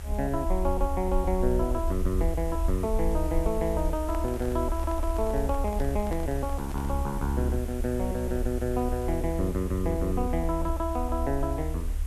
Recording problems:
background hiss; slope -3 dB per octave, SNR 16 dB
low-frequency rumble; below 70 Hz, SNR 3 dB
handling noise; from 4 to 7 s; peak -7 dB vs average level

